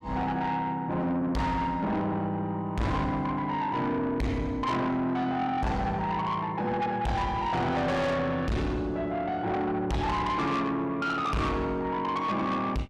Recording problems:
distortion; soft clipping, signal-to-distortion ratio 7 dB

